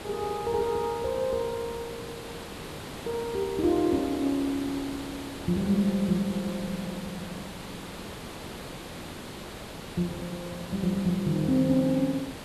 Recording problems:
background hiss; slope -5 dB per octave, SNR 11 dB

